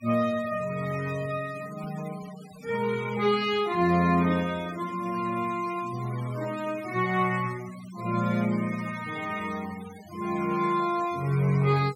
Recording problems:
noise reduction artefacts; signal-to-artefact ratio 18 dB

